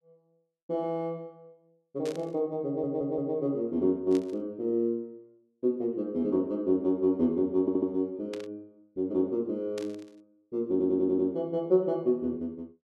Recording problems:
static burst; 4 times, first at 2 s; peak -10 dB vs average level
stutter; at 2.5 s, at 7.5 s and at 11 s

